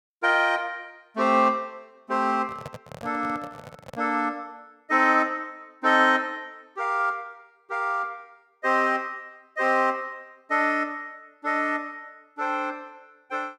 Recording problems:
handling noise; from 2.5 to 4 s; peak -9 dB vs average level

